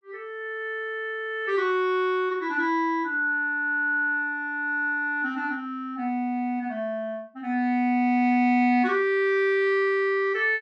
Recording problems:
none

